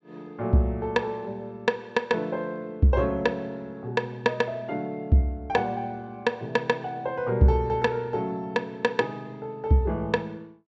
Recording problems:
treble cut off; nothing above 8 kHz

